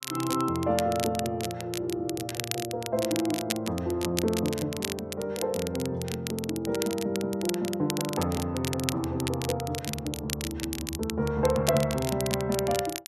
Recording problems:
crackle; vinyl, SNR 7 dB

